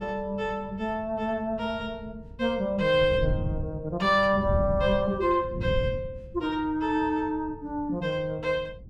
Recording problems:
wind noise; below 140 Hz, SNR 9 dB

